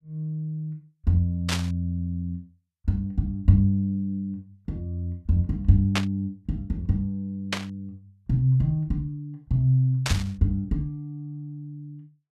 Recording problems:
static burst; 4 times, first at 1.5 s; peak +4 dB vs average level

